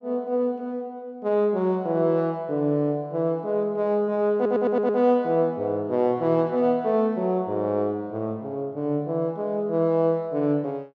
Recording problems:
audio stuttering; at 4.5 s

